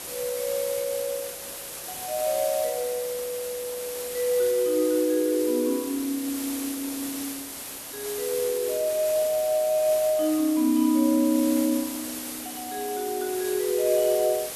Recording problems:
background hiss; slope -2 dB per octave, SNR 8 dB

